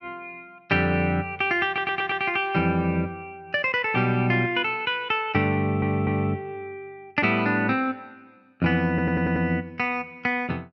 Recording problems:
stutter; at 1.5 s, at 5.5 s and at 9 s

